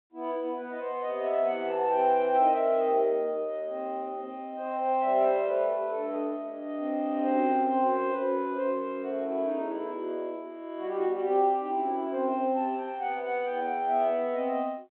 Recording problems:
phone line; 240 Hz to 3.9 kHz, G.726

